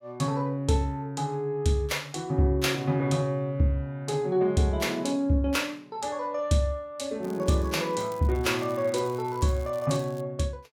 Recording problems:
crackling; from 7 to 10 s; loose cable, SNR 24 dB

